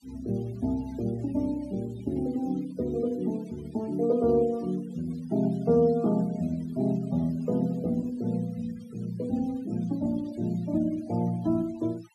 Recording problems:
noise reduction artefacts; signal-to-artefact ratio 25 dB

